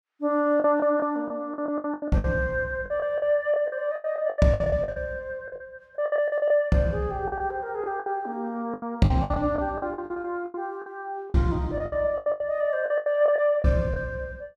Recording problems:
lost packets; 16% of the sound replaced, filled with the last packet

